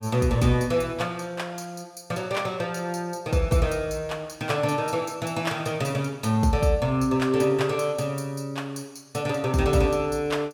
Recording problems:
none

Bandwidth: 17.5 kHz